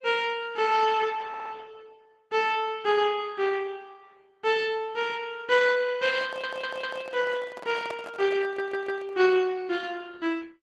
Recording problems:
lossy compression; Opus, log-spectral distance 4 dB
stutter; at 1.5 s, at 6 s and at 8.5 s
handling noise; from 6 to 9 s; peak -6 dB vs average level

